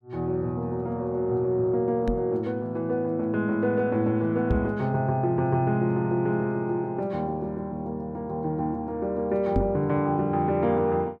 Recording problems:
microphone bump; at 2 s, at 4.5 s and at 9.5 s; peak +3 dB vs average level

